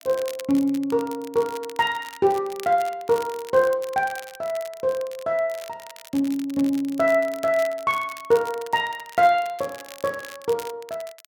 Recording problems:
crackle; vinyl, SNR 19 dB

